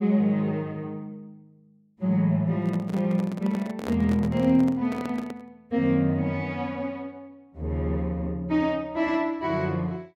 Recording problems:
handling noise; from 2.5 to 5.5 s; peak -3 dB vs average level

